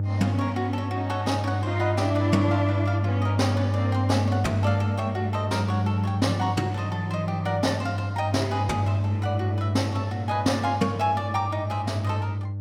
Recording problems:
hum; 50 Hz, harmonics up to 600 Hz, SNR 1 dB

